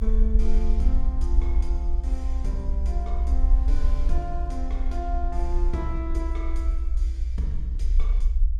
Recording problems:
low-frequency rumble; below 58 Hz, SNR -9 dB
wind noise; below 720 Hz, SNR 22 dB

